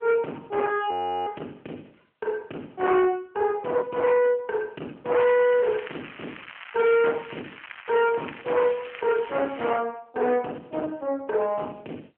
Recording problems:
phone line; 240 Hz to 3.3 kHz, AMR-NB
distortion; soft clipping, signal-to-distortion ratio 7 dB
frozen audio; at 1 s
crackle; from 5 to 10 s; loose cable, SNR 16 dB

